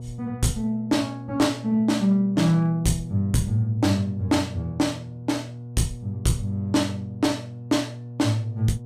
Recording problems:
distorted audio; hard clipping, signal-to-distortion ratio 12 dB
hum; 60 Hz, harmonics up to 720 Hz, SNR 13 dB

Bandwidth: 15.5 kHz